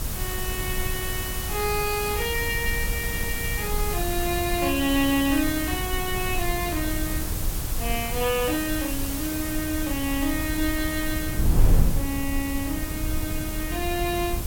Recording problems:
hiss; slope -1 dB per octave, SNR 4 dB
wind noise; below 98 Hz, SNR 3 dB

